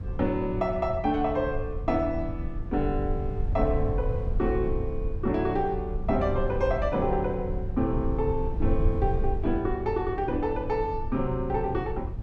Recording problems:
low-frequency rumble; below 90 Hz, SNR 5 dB

